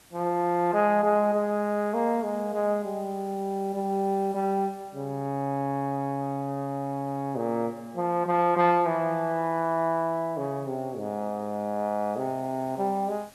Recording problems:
background hiss; slope -2 dB per octave, SNR 27 dB

